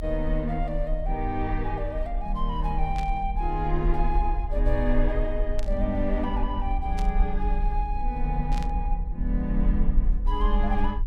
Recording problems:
low-frequency rumble; below 42 Hz, SNR 0 dB
burst of static; 4 times, first at 3 s; peak -6 dB vs average level

